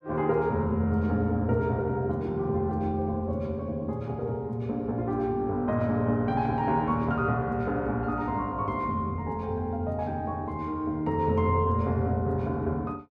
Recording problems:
none

